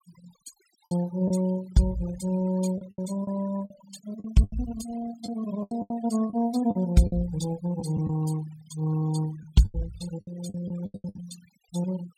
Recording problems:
noise reduction artefacts; signal-to-artefact ratio 18 dB
packet loss; 10% of the sound replaced, filled with the last packet

